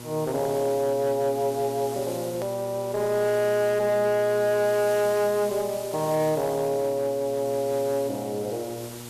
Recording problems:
distorted audio; hard clipping, uneven, signal-to-distortion ratio 11 dB
hum; 60 Hz, harmonics up to 1.6 kHz, SNR 16 dB
background hiss; SNR 16 dB
click at an edit; at 2.5 s

